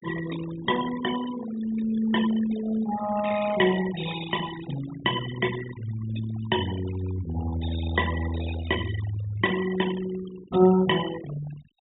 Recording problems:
treble cut off; nothing above 4 kHz
denoising artefacts; signal-to-artefact ratio 12 dB

